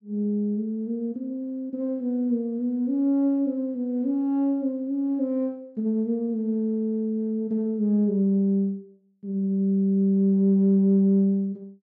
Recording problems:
none

